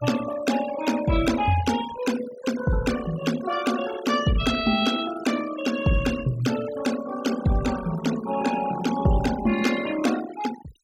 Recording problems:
denoising artefacts; signal-to-artefact ratio 11 dB

